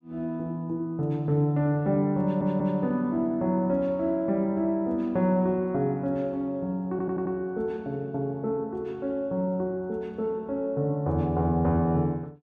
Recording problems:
audio stuttering; at 2 s and at 7 s

